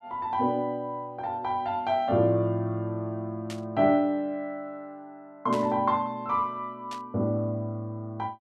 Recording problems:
burst of static; at 3.5 s, at 5.5 s and at 7 s; peak -8 dB vs average level

